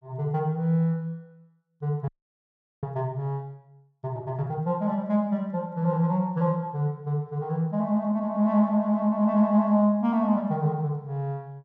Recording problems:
frozen audio; at 2 s for 1 s

